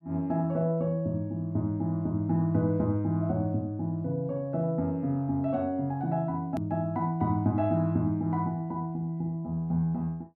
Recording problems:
edit click; at 6.5 s

